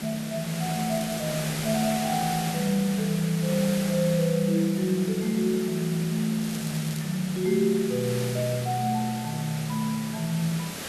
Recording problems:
background hiss; SNR 9 dB
crackle; at 1 s and at 6.5 s; loose cable, SNR 17 dB

